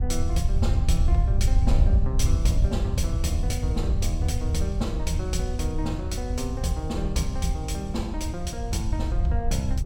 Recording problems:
wind on the microphone; below 82 Hz, SNR -4 dB

